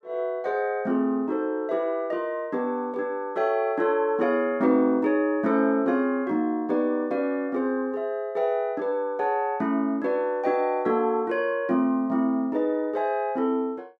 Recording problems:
none

